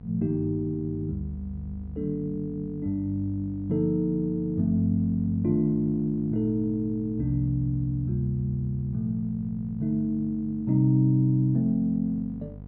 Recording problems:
electrical hum; 50 Hz, harmonics up to 700 Hz, SNR 16 dB

